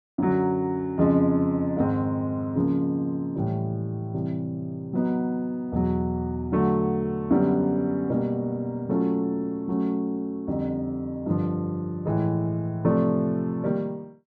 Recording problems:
none

